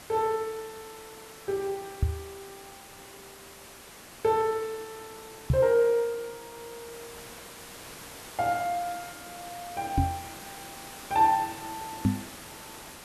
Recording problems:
background hiss; slope -3 dB per octave, SNR 15 dB
microphone thump; 4 times, first at 2 s; peak +8 dB vs average level

